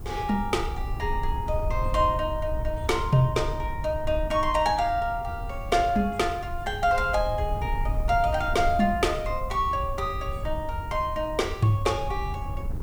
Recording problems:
background hiss; SNR 29 dB
wind on the microphone; below 84 Hz, SNR 8 dB

